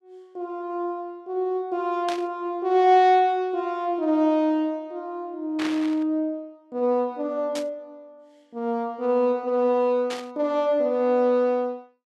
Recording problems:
static burst; 4 times, first at 2 s; peak -5 dB vs average level

